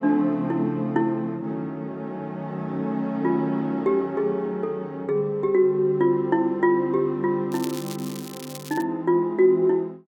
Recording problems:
crackling; from 7.5 to 9 s; loose cable, SNR 16 dB

